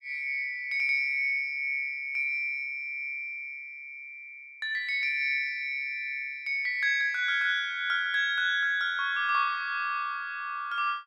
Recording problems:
none

